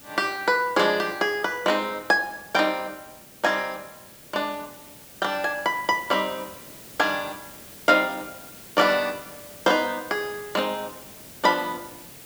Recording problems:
hiss; SNR 18 dB

